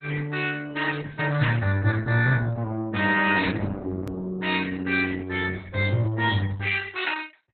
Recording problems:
codec artefacts; Opus, log-spectral distance 4 dB, nothing above 4 kHz
click at an edit; at 4 s

